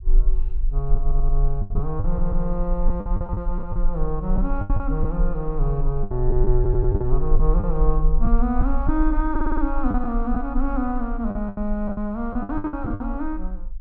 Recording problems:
low-frequency rumble; below 38 Hz, strongest tone 22 Hz, SNR 0 dB
packet loss; 10% of the sound replaced, filled with the last packet
audio stuttering; 4 times, first at 1 s

